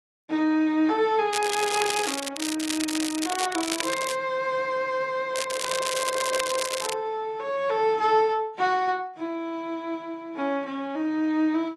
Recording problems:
lossy compression; AAC, log-spectral distance 5 dB
crackling; from 1.5 to 4 s and from 5.5 to 7 s; loose cable, SNR 4 dB

